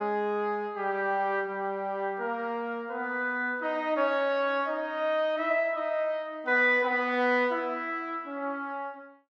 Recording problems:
none

